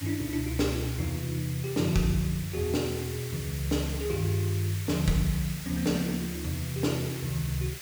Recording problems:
background hiss; SNR 10 dB

